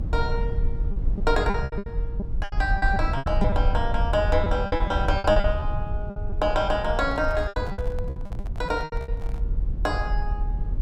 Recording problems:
rumble; below 74 Hz, SNR 2 dB
packet loss; 14% of the sound replaced, filled with repeated pitch periods
microphone handling noise; from 7 to 9.5 s; peak -10 dB vs average level

